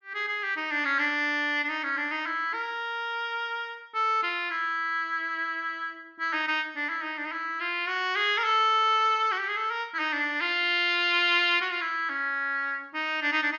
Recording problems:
treble missing; nothing above 6.7 kHz

